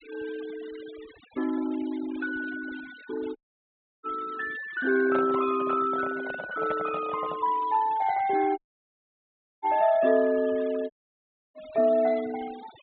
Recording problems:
low-pass filter; nothing above 4 kHz
denoising artefacts; signal-to-artefact ratio 20 dB
dropout; at 3.5 s for 0.5 s, at 8.5 s for 1 s and at 11 s for 0.5 s
handling noise; from 5 to 7.5 s; peak -2 dB vs average level

